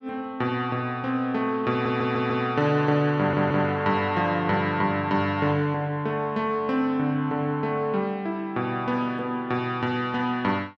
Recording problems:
audio stuttering; at 1.5 s and at 3 s

